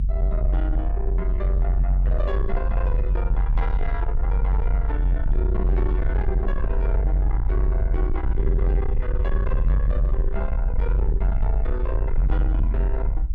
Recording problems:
distortion; soft clipping, signal-to-distortion ratio 10 dB
rumble; below 50 Hz, strongest tone 46 Hz, SNR -8 dB

